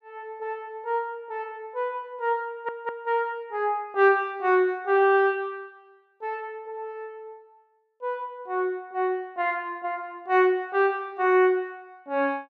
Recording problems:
stutter; at 2.5 s

